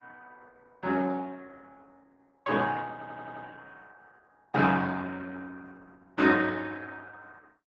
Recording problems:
lossy codec; Opus, log-spectral distance 4 dB
audio stuttering; at 3 s

